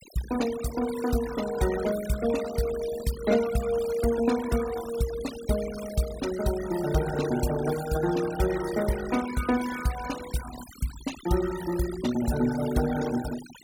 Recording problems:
noise reduction artefacts; signal-to-artefact ratio 12 dB

